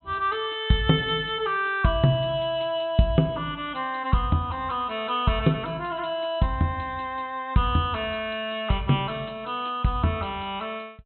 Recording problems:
low-pass filter; nothing above 4 kHz

